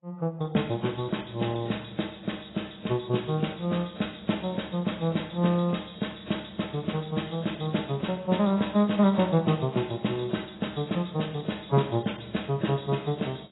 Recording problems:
codec artefacts; AAC, log-spectral distance 11 dB, nothing above 3.8 kHz

